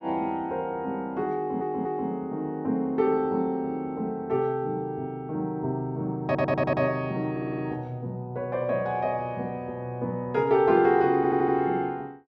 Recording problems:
audio stuttering; 4 times, first at 1.5 s

